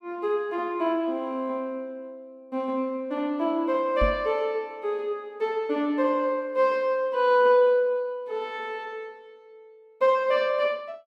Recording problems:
microphone thump; at 4 s; peak +1 dB vs average level

